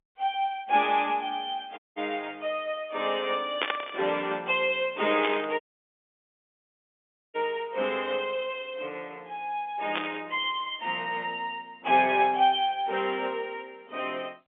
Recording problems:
phone line; 260 Hz to 3.6 kHz, G.711
audio cutting out; at 2 s and at 5.5 s for 1.5 s
burst of static; at 3.5 s, at 5 s and at 10 s; peak +5 dB vs average level

